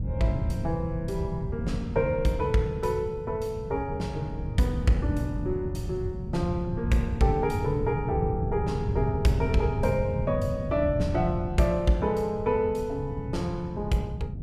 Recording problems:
wind on the microphone; below 150 Hz, SNR 4 dB

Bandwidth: 15 kHz